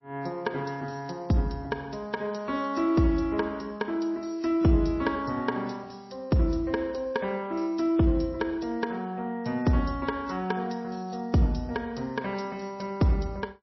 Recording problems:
codec artefacts; MP3, log-spectral distance 4 dB, nothing above 5.7 kHz

